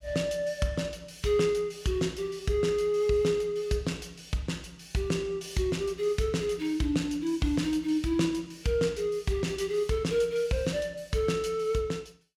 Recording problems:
none

